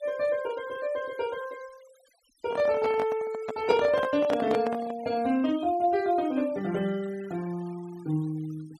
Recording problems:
noise reduction artefacts; signal-to-artefact ratio 20 dB
handling noise; from 2.5 to 5 s; peak 0 dB vs average level

